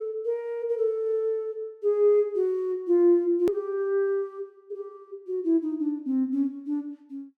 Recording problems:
edit click; at 3.5 s

